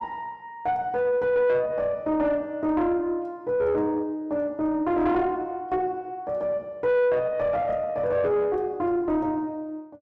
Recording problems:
distortion; soft clipping, signal-to-distortion ratio 10 dB

